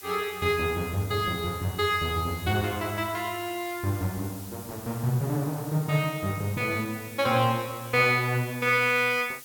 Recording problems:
background hiss; slope +1 dB per octave, SNR 16 dB

